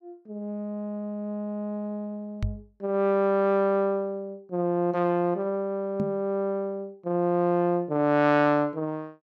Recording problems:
knock on the microphone; at 2.5 s and at 6 s; peak 0 dB vs average level

